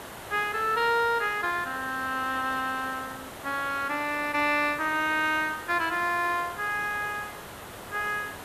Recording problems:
background hiss; SNR 13 dB

